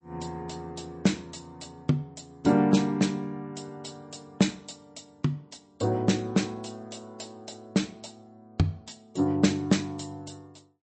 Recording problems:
lossy compression; MP3, log-spectral distance 4 dB, nothing above 8 kHz

